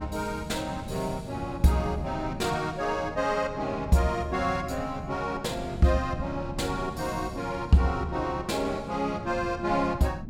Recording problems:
wind on the microphone; below 200 Hz, SNR 11 dB

